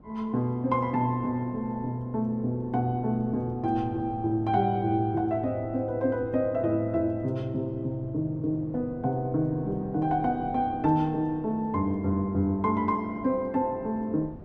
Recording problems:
wind on the microphone; below 370 Hz, SNR 20 dB

